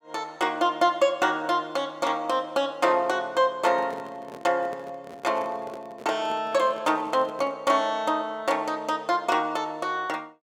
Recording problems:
handling noise; from 3.5 to 7.5 s; peak -12 dB vs average level

